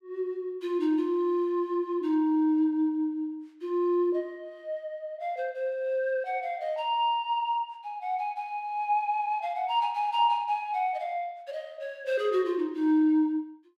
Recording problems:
none

